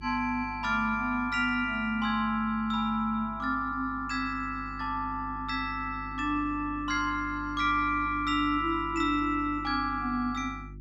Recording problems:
hum; 50 Hz, harmonics up to 350 Hz, SNR 16 dB

